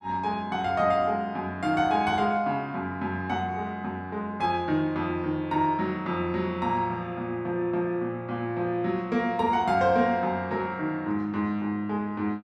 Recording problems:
none

